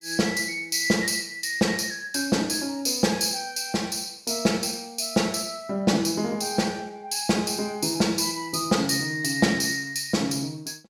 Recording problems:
none

